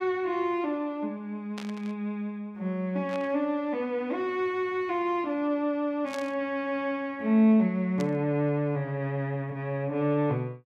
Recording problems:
static burst; 4 times, first at 1.5 s; peak -8 dB vs average level

